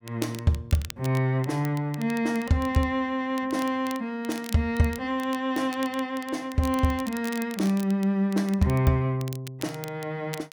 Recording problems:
crackling; vinyl, SNR 17 dB

